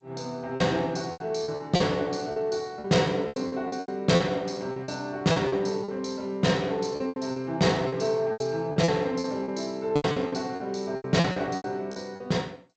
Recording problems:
codec artefacts; G.722, log-spectral distance 2 dB, nothing above 7.3 kHz
lost packets; 14% of the sound replaced, filled with repeated pitch periods

